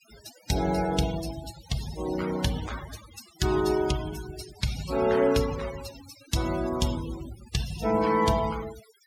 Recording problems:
noise reduction artefacts; signal-to-artefact ratio 12 dB

